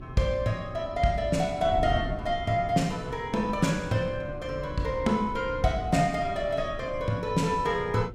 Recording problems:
electrical hum; 60 Hz, harmonics up to 1.6 kHz, SNR 22 dB
wind on the microphone; below 210 Hz, SNR 12 dB

